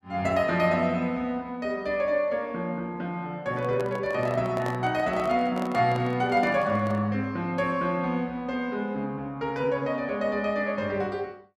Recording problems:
microphone handling noise; from 3.5 to 7 s; peak -4 dB vs average level

